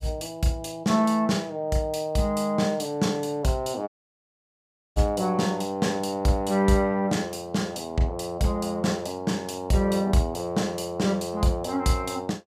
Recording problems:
audio cutting out; at 4 s for 1 s

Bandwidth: 15 kHz